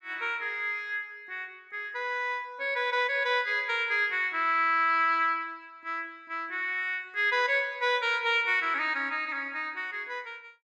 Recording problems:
none

